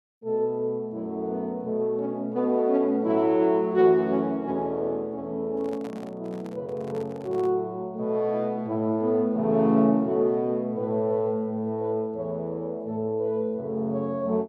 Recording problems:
microphone handling noise; from 5.5 to 7.5 s; peak -13 dB vs average level

